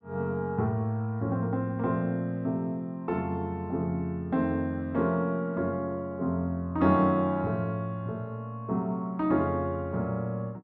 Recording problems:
none

